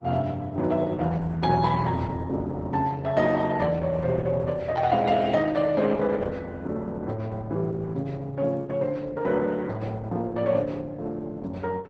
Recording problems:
lossy compression; Opus, log-spectral distance 3 dB, nothing above 7.8 kHz

